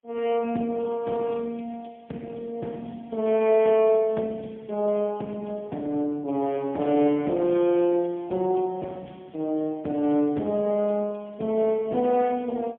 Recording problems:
phone line; 150 Hz to 3.5 kHz, AMR-NB, then MP3

